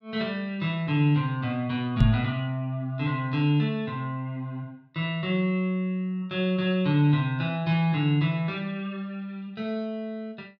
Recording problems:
microphone thump; at 2 s; peak +7 dB vs average level

